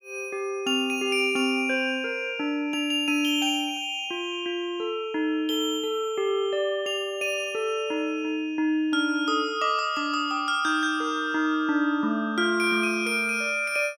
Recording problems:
none

